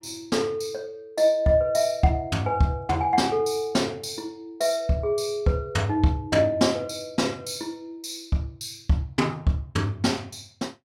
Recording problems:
none

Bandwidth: 16 kHz